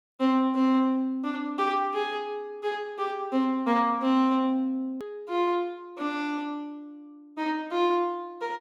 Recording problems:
click at an edit; at 5 s

